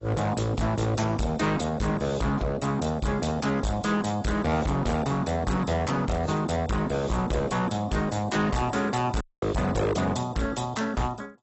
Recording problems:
codec artefacts; AAC, log-spectral distance 5 dB, nothing above 8 kHz
distortion; hard clipping, signal-to-distortion ratio 6 dB
audio cutting out; at 9 s

